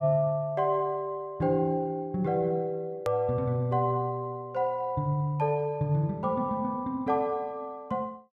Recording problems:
edit click; at 3 s

